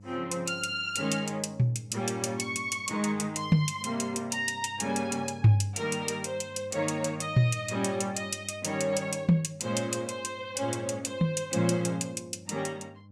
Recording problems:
hum; 50 Hz, harmonics up to 600 Hz, SNR 21 dB

